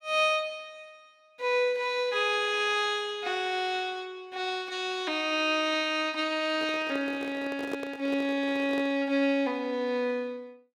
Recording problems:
handling noise; from 6.5 to 9 s; peak -2 dB vs average level

